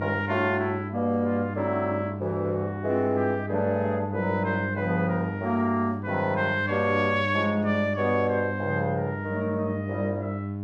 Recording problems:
electrical hum; 50 Hz, harmonics up to 700 Hz, SNR 6 dB

